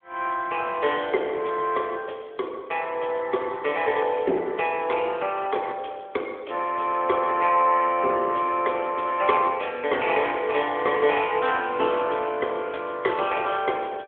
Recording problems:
phone line; 280 Hz to 3.4 kHz, AMR-NB

